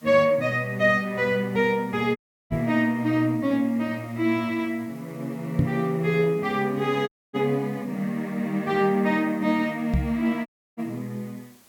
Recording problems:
background hiss; slope -2 dB per octave, SNR 29 dB
audio cutting out; at 2 s, at 7 s and at 10 s
microphone bump; at 2.5 s, at 5.5 s and at 10 s; peak +6 dB vs average level

